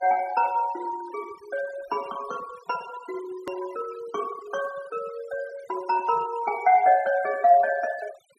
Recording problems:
noise reduction artefacts; signal-to-artefact ratio 20 dB
edit click; at 3.5 s

